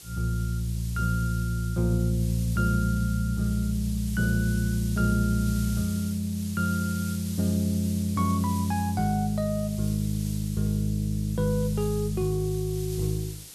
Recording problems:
hiss; SNR 14 dB

